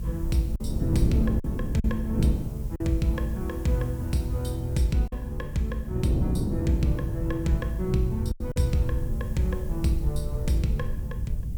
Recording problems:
hiss; slope +1 dB per octave, SNR 24 dB
low-frequency rumble; below 78 Hz, SNR 6 dB
wind on the microphone; below 250 Hz, SNR 4 dB
lost packets; 3% of the sound replaced, filled with silence

